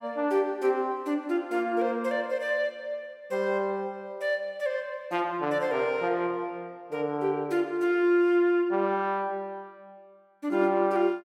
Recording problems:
none

